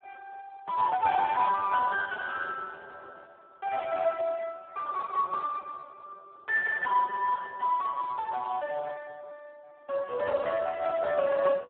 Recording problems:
telephone audio; 260 Hz to 3.4 kHz, Speex

